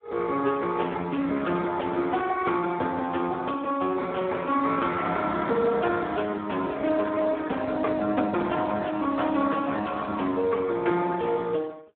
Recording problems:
phone line; 220 Hz to 2.7 kHz, Speex

